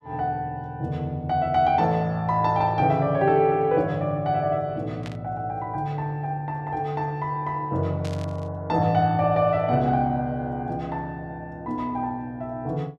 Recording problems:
static burst; at 5 s and at 8 s; peak -10 dB vs average level

